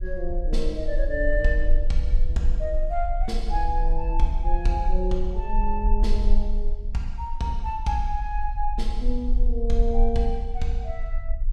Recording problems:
low-frequency rumble; below 38 Hz, strongest tone 22 Hz, SNR -1 dB

